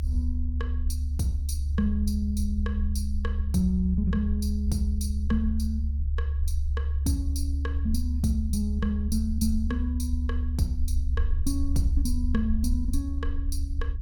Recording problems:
low-frequency rumble; below 72 Hz, strongest tone 70 Hz, SNR -2 dB

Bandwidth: 17.5 kHz